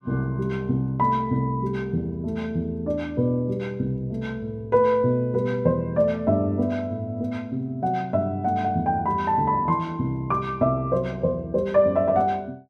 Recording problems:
none

